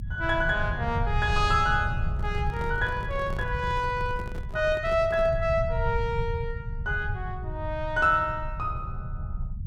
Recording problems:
rumble; below 110 Hz, SNR 6 dB
handling noise; from 2 to 5.5 s; peak -9 dB vs average level

